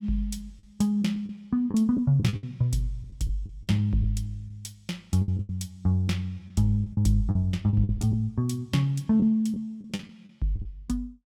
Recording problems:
packet loss; 10% of the sound replaced, filled with the last packet

